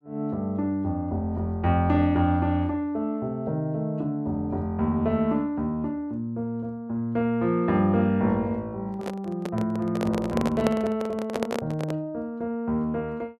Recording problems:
microphone handling noise; from 9 to 12 s; peak +4 dB vs average level

